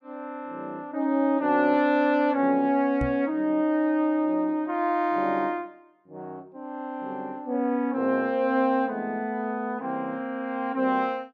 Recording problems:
microphone bump; at 3 s; peak 0 dB vs average level

